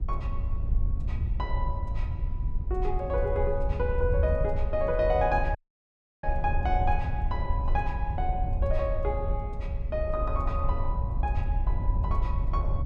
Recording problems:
wind on the microphone; below 74 Hz, SNR -1 dB
audio cutting out; at 5.5 s for 0.5 s

